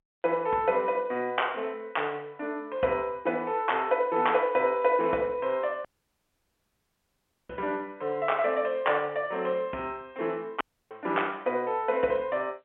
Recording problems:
phone line; 300 Hz to 3.3 kHz, G.711
audio cutting out; at 6 s for 1.5 s and at 11 s

